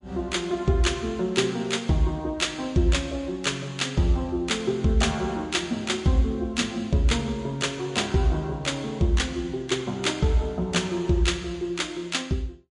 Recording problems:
lossy codec; MP3, log-spectral distance 2 dB, nothing above 11 kHz

